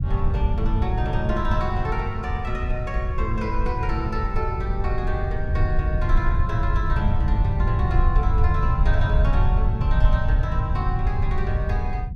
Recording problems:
low-frequency rumble; below 92 Hz, SNR -5 dB

